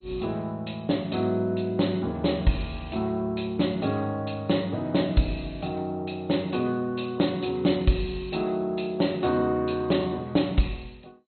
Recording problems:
codec artefacts; MP2, log-spectral distance 4 dB, nothing above 4.2 kHz

